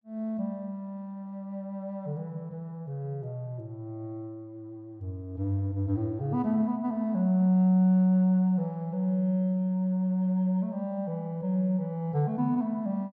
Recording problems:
none

